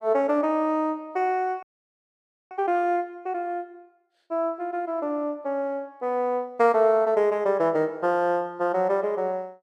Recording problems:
frozen audio; at 1.5 s for 1 s

